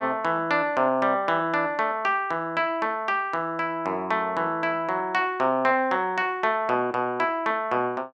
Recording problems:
none

